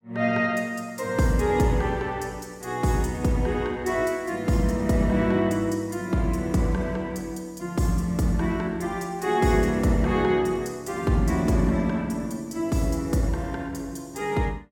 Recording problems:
none

